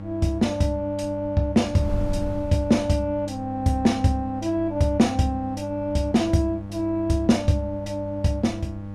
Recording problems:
electrical hum; 50 Hz, harmonics up to 1.1 kHz, SNR 11 dB
wind on the microphone; below 100 Hz, SNR 17 dB

